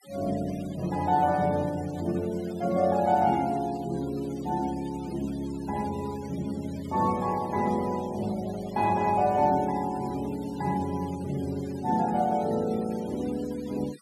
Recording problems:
denoising artefacts; signal-to-artefact ratio 20 dB

